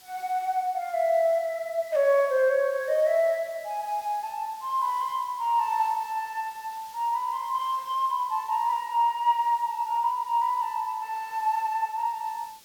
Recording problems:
hiss; slope +1 dB per octave, SNR 23 dB

